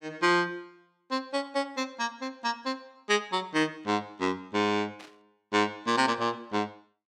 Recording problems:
burst of static; at 3.5 s and at 5 s; peak -14 dB vs average level

